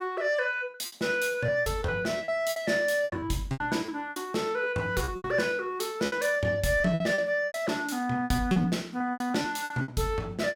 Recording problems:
packet loss; 14% of the sound replaced, filled with repeated pitch periods

